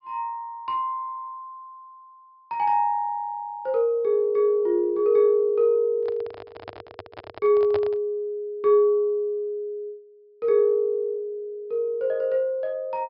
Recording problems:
treble missing; nothing above 5.5 kHz
microphone handling noise; from 6 to 8 s; peak -5 dB vs average level

